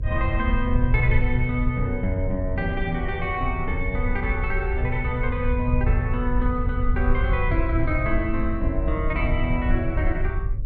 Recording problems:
electrical hum; 50 Hz, harmonics up to 600 Hz, SNR 23 dB
low-frequency rumble; below 78 Hz, SNR 0 dB

